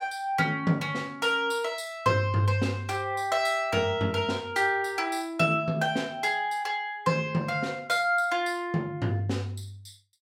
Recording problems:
none

